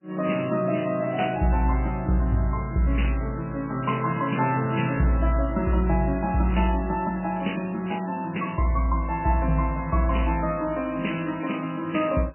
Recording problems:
codec artefacts; MP3, log-spectral distance 5 dB, nothing above 3 kHz

